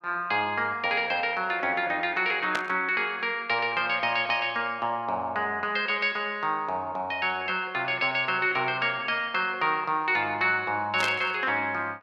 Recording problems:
static burst; at 2.5 s and at 11 s; peak 0 dB vs average level

